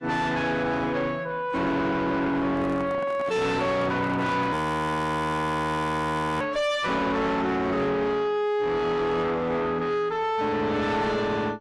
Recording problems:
lossy compression; AAC, log-spectral distance 2 dB, nothing above 13.3 kHz
distorted audio; soft clipping, signal-to-distortion ratio 7 dB
handling noise; from 2.5 to 4.5 s; peak -7 dB vs average level
frozen audio; at 4.5 s for 2 s

